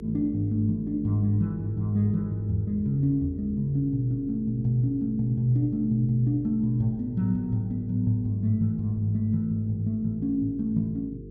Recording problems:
hum; 50 Hz, harmonics up to 450 Hz, SNR 16 dB

